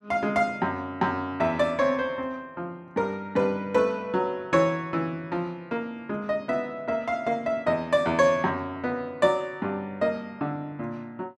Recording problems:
none

